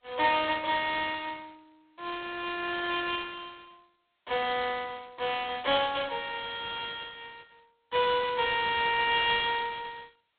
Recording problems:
telephone audio; 300 Hz to 3.7 kHz, G.726

